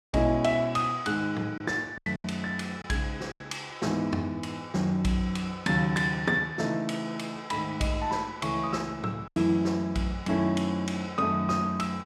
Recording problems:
lost packets; 3% of the sound replaced, filled with silence

